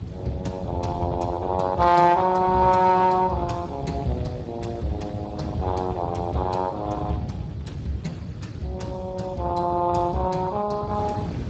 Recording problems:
lossy compression; Speex, log-spectral distance 3 dB, nothing above 7.3 kHz
rumble; below 170 Hz, SNR 10 dB
wind noise; below 410 Hz, SNR 18 dB

